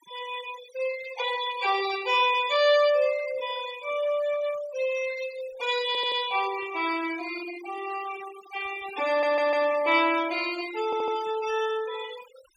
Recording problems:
noise reduction artefacts; signal-to-artefact ratio 15 dB
audio stuttering; at 6 s, at 9 s and at 11 s

